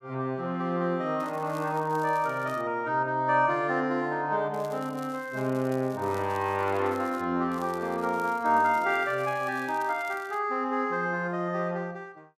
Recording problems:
crackle; from 1 to 2.5 s, from 4.5 to 7 s and from 7.5 to 10 s; loose cable, SNR 24 dB

